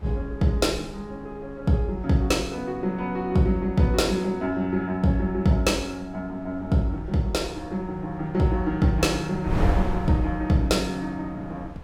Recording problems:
wind noise; below 170 Hz, SNR 12 dB

